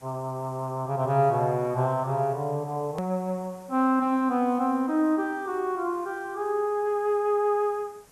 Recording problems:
hiss; SNR 28 dB
edit click; at 3 s

